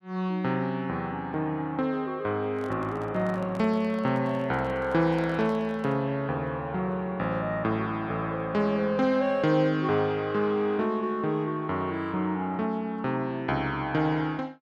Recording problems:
handling noise; from 2.5 to 6 s; peak -10 dB vs average level

